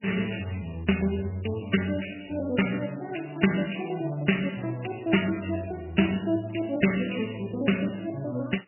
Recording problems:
lossy codec; MP3, log-spectral distance 8 dB, nothing above 2.9 kHz

